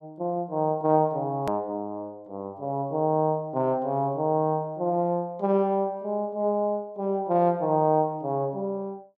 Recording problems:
edit click; at 1.5 s

